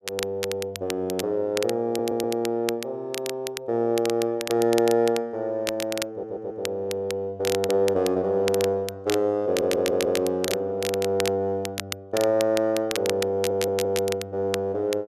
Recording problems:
crackle; vinyl, SNR 9 dB
audio stuttering; 4 times, first at 2 s

